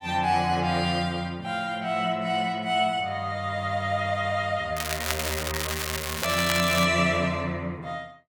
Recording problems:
crackling; from 5 to 7 s; loose cable, SNR 3 dB

